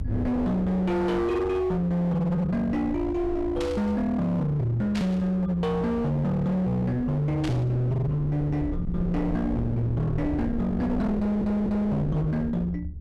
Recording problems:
distorted audio; hard clipping, uneven, signal-to-distortion ratio 7 dB
low-frequency rumble; below 160 Hz, SNR 9 dB
burst of static; at 3.5 s, at 5 s and at 7.5 s; peak -7 dB vs average level
stutter; at 11 s

